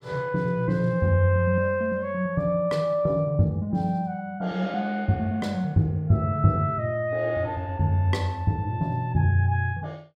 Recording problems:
none

